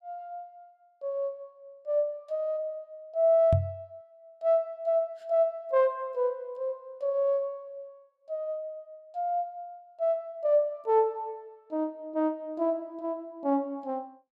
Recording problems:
knock on the microphone; at 3.5 s; peak +6 dB vs average level

